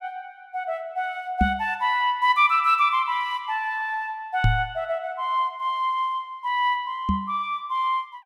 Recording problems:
knock on the microphone; at 1.5 s, at 4.5 s and at 7 s; peak +6 dB vs average level

